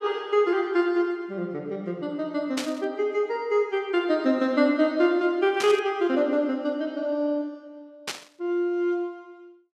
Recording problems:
static burst; at 2.5 s, at 5.5 s and at 8 s; peak -1 dB vs average level

